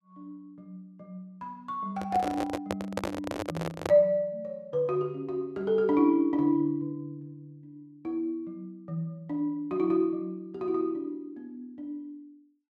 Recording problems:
handling noise; from 2 to 4 s; peak +1 dB vs average level

